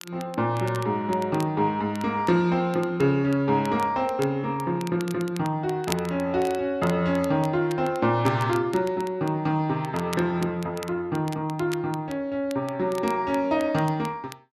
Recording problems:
crackle; vinyl, SNR 19 dB

